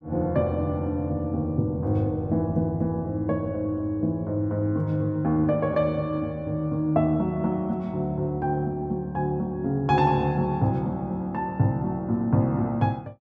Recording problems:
none

